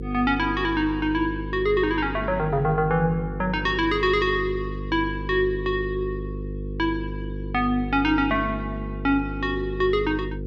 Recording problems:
electrical hum; 50 Hz, harmonics up to 500 Hz, SNR 8 dB

